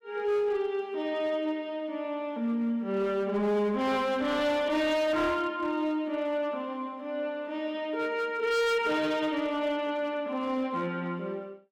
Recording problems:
distortion; hard clipping, signal-to-distortion ratio 11 dB

